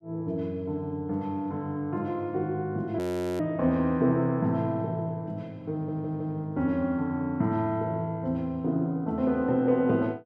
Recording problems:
frozen audio; at 3 s
audio stuttering; at 5.5 s

